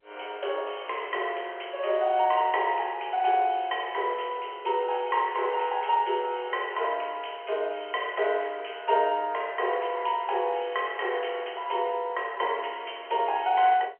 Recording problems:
telephone audio; 340 Hz to 3.2 kHz, G.711

